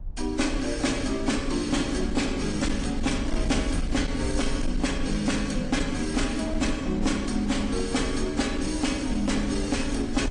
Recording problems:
codec artefacts; AAC, then MP3, log-spectral distance 4 dB, nothing above 9 kHz
distorted audio; hard clipping, uneven, signal-to-distortion ratio 12 dB
rumble; below 60 Hz, SNR 9 dB

